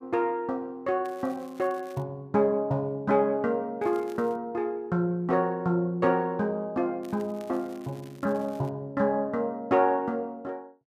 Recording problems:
crackling; at 1 s, at 4 s and from 7 to 8.5 s; loose cable, SNR 27 dB

